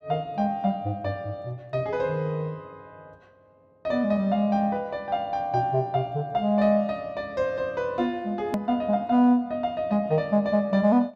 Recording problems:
hard cut with a click; at 8.5 s

